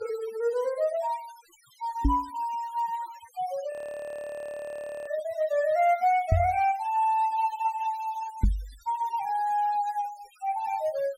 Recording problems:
noise reduction artefacts; signal-to-artefact ratio 21 dB
microphone bump; at 2 s, at 6.5 s and at 8.5 s; peak +8 dB vs average level
audio freezing; at 3.5 s for 1.5 s

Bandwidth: 16 kHz